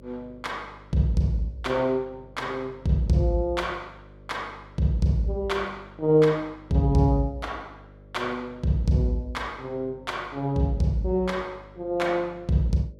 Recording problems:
mains hum; 50 Hz, harmonics up to 600 Hz, SNR 23 dB

